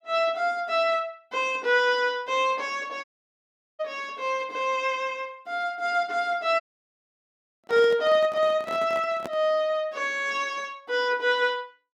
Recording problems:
dropout; at 3 s for 1 s and at 6.5 s for 1 s
microphone handling noise; from 7.5 to 9.5 s; peak -6 dB vs average level

